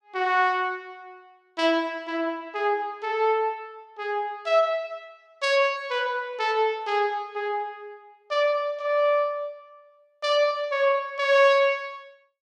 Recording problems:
none

